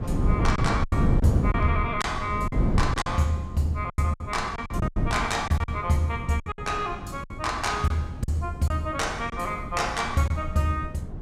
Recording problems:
wind noise; below 200 Hz, SNR 3 dB
lost packets; 9% of the sound replaced, filled with silence

